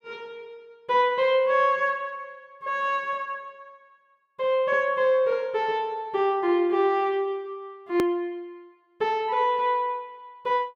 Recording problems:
click at an edit; at 8 s

